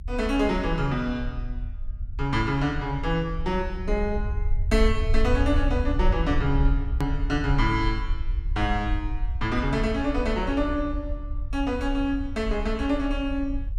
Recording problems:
rumble; below 64 Hz, SNR 4 dB
click at an edit; at 7 s

